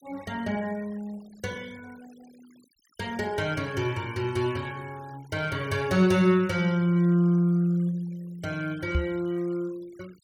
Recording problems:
noise reduction artefacts; signal-to-artefact ratio 25 dB
knock on the microphone; at 9 s; peak +3 dB vs average level

